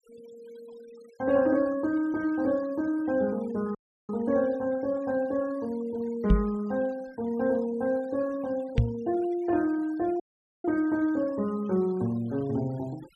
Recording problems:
denoising artefacts; signal-to-artefact ratio 25 dB
audio cutting out; at 4 s and at 10 s
microphone bump; at 6.5 s and at 9 s; peak +10 dB vs average level

